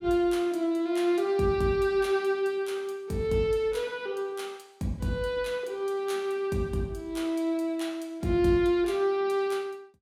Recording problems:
none

